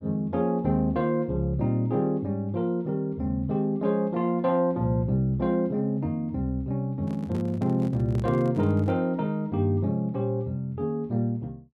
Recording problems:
microphone handling noise; from 7 to 9 s; peak -10 dB vs average level

